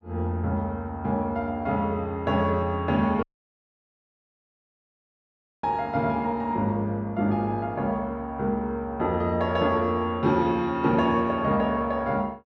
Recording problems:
audio cutting out; at 3 s for 2.5 s

